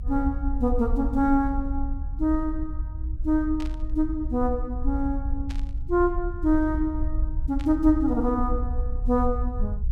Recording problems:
low-frequency rumble; below 60 Hz, SNR 5 dB
burst of static; at 3.5 s, at 5.5 s and at 7.5 s; peak -12 dB vs average level

